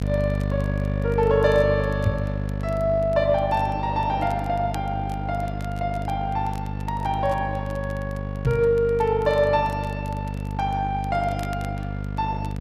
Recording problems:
hum; 50 Hz, harmonics up to 750 Hz, SNR 4 dB
crackling; vinyl, SNR 26 dB
knock on the microphone; at 2 s and at 8.5 s; peak +6 dB vs average level

